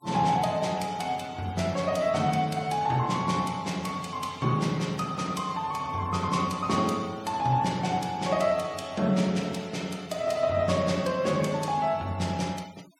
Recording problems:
noise reduction artefacts; signal-to-artefact ratio 22 dB

